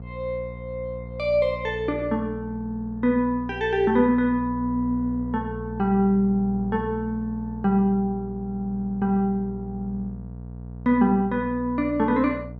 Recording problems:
hum; 60 Hz, harmonics up to 720 Hz, SNR 12 dB

